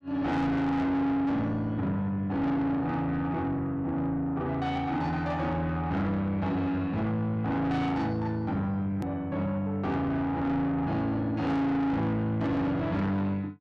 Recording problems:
distortion; soft clipping, signal-to-distortion ratio 8 dB
hard cut with a click; at 9 s

